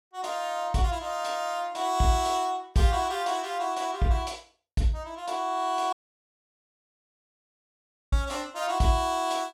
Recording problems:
dropout; at 6 s for 2 s

